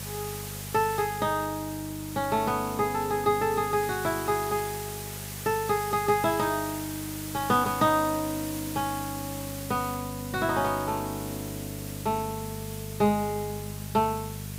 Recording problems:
hum; 50 Hz, harmonics up to 450 Hz, SNR 12 dB
background hiss; slope -1 dB per octave, SNR 10 dB

